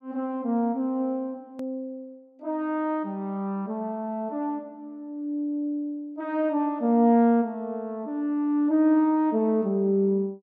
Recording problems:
click at an edit; at 1.5 s

